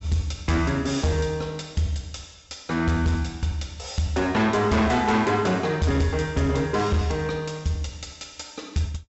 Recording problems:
treble cut off; nothing above 7.7 kHz
distortion; hard clipping, signal-to-distortion ratio 12 dB

